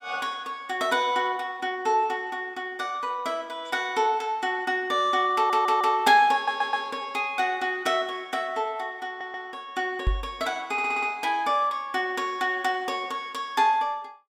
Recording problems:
stutter; 4 times, first at 5.5 s
microphone bump; at 10 s; peak +4 dB vs average level

